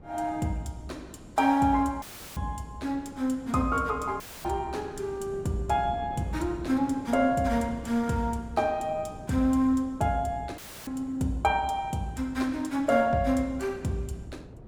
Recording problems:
wind noise; below 340 Hz, SNR 18 dB
audio cutting out; at 2 s, at 4 s and at 11 s; filled with static

